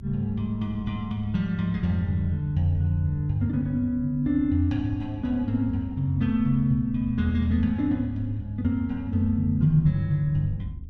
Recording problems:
rumble; below 100 Hz, SNR 15 dB

